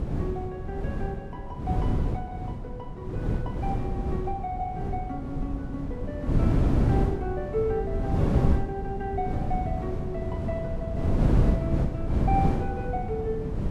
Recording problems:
wind noise; below 220 Hz, SNR -6 dB

